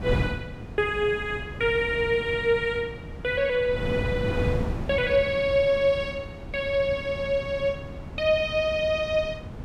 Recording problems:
wind on the microphone; below 270 Hz, SNR 9 dB

